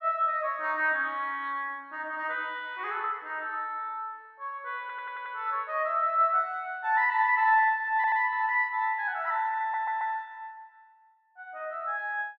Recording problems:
audio stuttering; at 5 s, at 8 s and at 9.5 s

